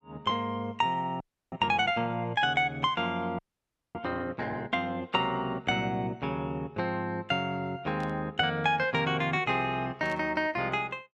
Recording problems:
audio freezing; at 1 s and at 3.5 s for 0.5 s
static burst; at 8 s and at 10 s; peak -14 dB vs average level

